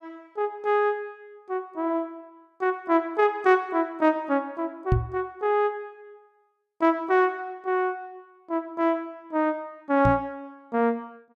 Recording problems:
knock on the microphone; at 5 s and at 10 s; peak +6 dB vs average level

